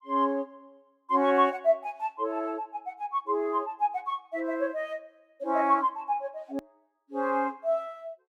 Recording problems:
click at an edit; at 6.5 s

